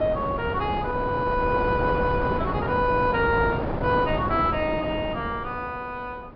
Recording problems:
treble missing; nothing above 5.5 kHz
wind on the microphone; below 670 Hz, SNR 4 dB

